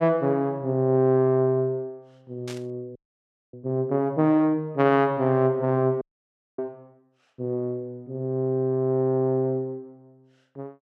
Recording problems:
static burst; at 2.5 s; peak -12 dB vs average level
audio freezing; at 3 s for 0.5 s and at 6 s for 0.5 s

